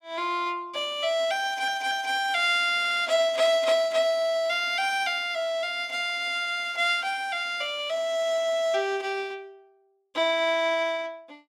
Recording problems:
stutter; at 1.5 s and at 3 s

